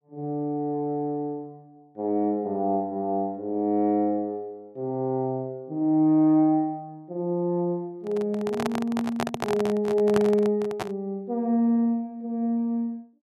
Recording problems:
microphone handling noise; from 8 to 11 s; peak +1 dB vs average level

